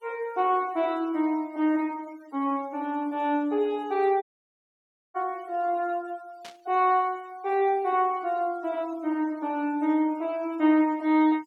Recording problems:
noise reduction artefacts; signal-to-artefact ratio 27 dB
audio cutting out; at 4 s for 1 s
burst of static; at 6.5 s; peak -13 dB vs average level

